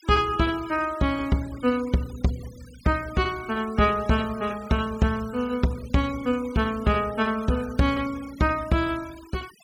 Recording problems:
noise reduction artefacts; signal-to-artefact ratio 20 dB

